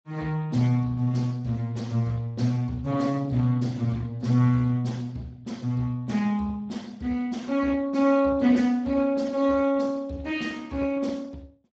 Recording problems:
codec artefacts; Speex, log-spectral distance 3 dB

